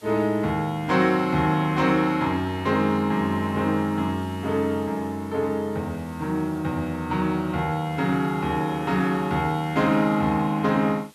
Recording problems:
hiss; slope -1 dB per octave, SNR 27 dB

